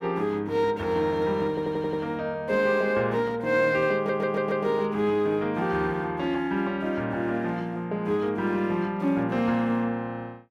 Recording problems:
audio stuttering; at 1.5 s and at 4 s

